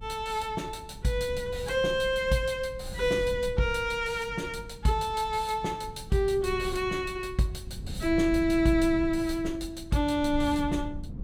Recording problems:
low-frequency rumble; below 130 Hz, SNR 13 dB

